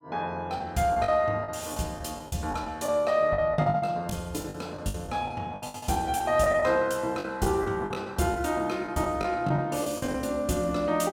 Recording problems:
lost packets; 12% of the sound replaced, filled with the last packet

